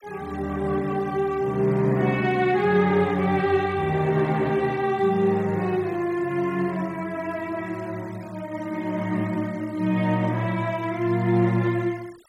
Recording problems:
denoising artefacts; signal-to-artefact ratio 25 dB

